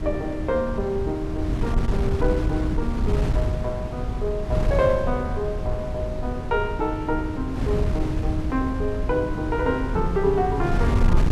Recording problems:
wind noise; below 130 Hz, SNR 1 dB

